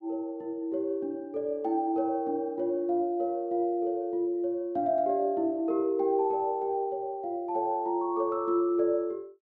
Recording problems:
none

